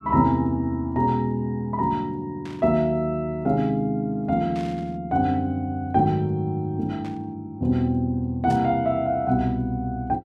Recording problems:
static burst; 4 times, first at 2.5 s; peak -14 dB vs average level

